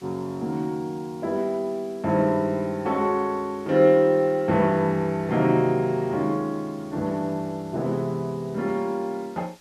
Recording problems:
hiss; slope 0 dB per octave, SNR 28 dB

